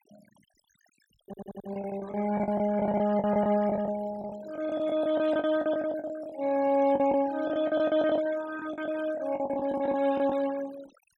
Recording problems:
denoising artefacts; signal-to-artefact ratio 19 dB
lost packets; 15% of the sound replaced, filled with the last packet
stutter; at 1.5 s

